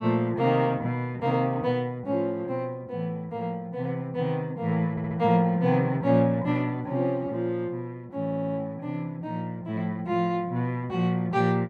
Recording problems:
audio stuttering; at 5 s and at 8 s

